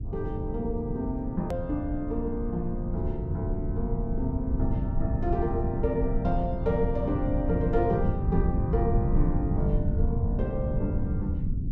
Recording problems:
low-frequency rumble; below 130 Hz, SNR -1 dB
click at an edit; at 1.5 s

